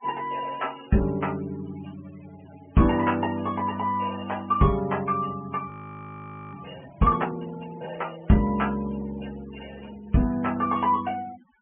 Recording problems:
treble cut off; nothing above 3 kHz
denoising artefacts; signal-to-artefact ratio 21 dB
audio freezing; at 5.5 s for 1 s

